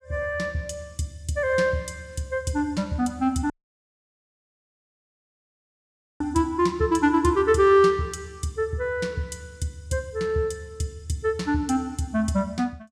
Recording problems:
dropout; at 3.5 s for 2.5 s

